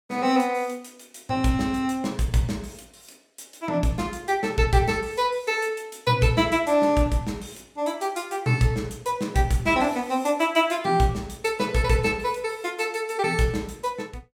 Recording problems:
none

